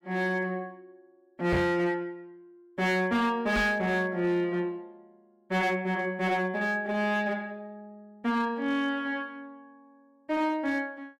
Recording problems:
distorted audio; hard clipping, signal-to-distortion ratio 12 dB
microphone thump; at 1.5 s and at 3.5 s; peak +2 dB vs average level

